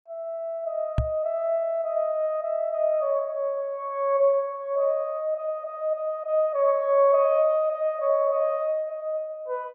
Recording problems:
knock on the microphone; at 1 s; peak +4 dB vs average level

